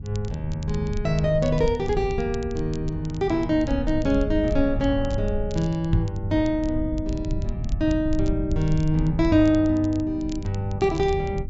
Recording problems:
low-pass filter; nothing above 8 kHz
hum; 50 Hz, harmonics up to 350 Hz, SNR 16 dB
low-frequency rumble; below 96 Hz, SNR 8 dB
crackling; vinyl, SNR 24 dB
knock on the microphone; at 6 s; peak +4 dB vs average level

